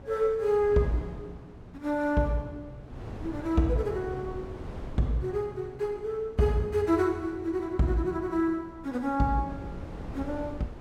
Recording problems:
hum; 60 Hz, harmonics up to 1.6 kHz, SNR 25 dB
wind on the microphone; below 370 Hz, SNR 16 dB

